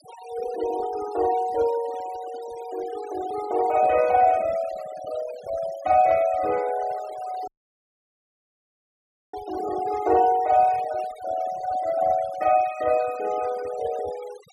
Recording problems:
denoising artefacts; signal-to-artefact ratio 19 dB
audio cutting out; at 7.5 s for 2 s

